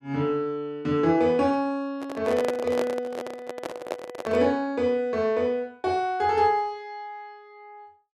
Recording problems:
handling noise; from 2 to 4.5 s; peak +1 dB vs average level

